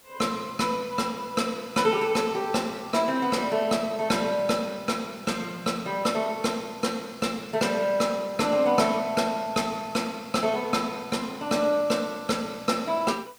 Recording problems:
background hiss; slope -1 dB per octave, SNR 26 dB

